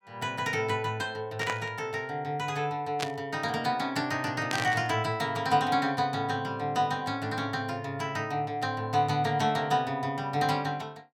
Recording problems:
burst of static; at 1.5 s, at 3 s and at 4.5 s; peak +2 dB vs average level

